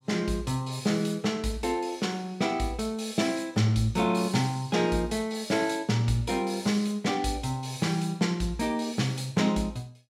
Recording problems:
none

